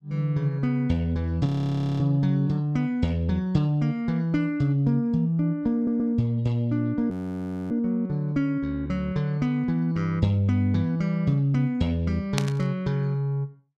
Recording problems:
audio freezing; at 1.5 s for 0.5 s and at 7 s for 0.5 s
stutter; at 5.5 s
static burst; at 12 s; peak +1 dB vs average level

